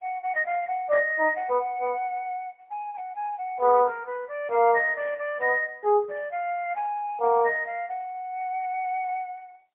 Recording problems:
phone line; 340 Hz to 3.5 kHz, AMR-NB, then MP3

